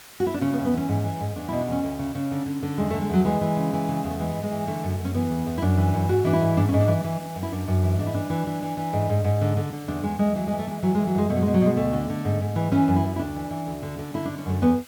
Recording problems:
background hiss; slope 0 dB per octave, SNR 20 dB

